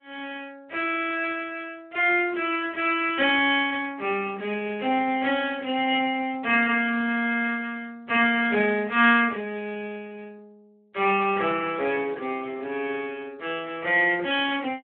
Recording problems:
telephone audio; 240 Hz to 3.5 kHz, Speex

